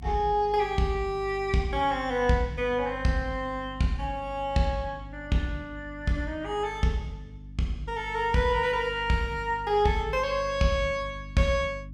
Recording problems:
electrical hum; 50 Hz, harmonics up to 300 Hz, SNR 16 dB

